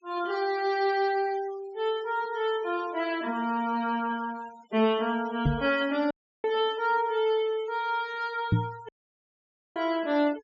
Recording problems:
treble cut off; nothing above 8 kHz
denoising artefacts; signal-to-artefact ratio 21 dB
microphone bump; at 5.5 s and at 8.5 s; peak +8 dB vs average level
dropout; at 6 s and at 9 s for 1 s

